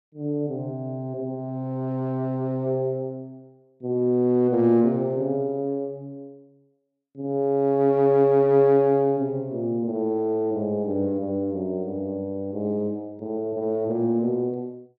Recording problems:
none

